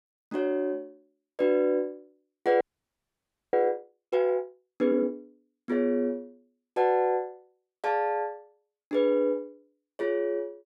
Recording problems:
audio freezing; at 2.5 s for 1 s

